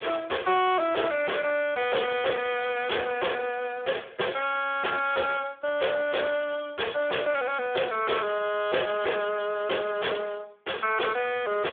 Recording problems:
telephone audio; 340 Hz to 2.8 kHz, Speex
distorted audio; soft clipping, signal-to-distortion ratio 6 dB

